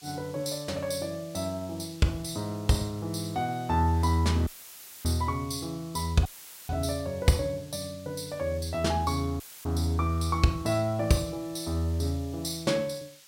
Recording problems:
background hiss; slope +3 dB per octave, SNR 22 dB
dropout; at 4.5 s for 0.5 s, at 6.5 s and at 9.5 s; filled with static

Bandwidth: 16 kHz